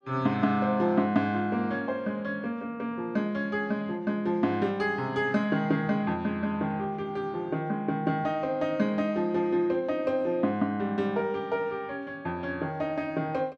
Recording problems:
none

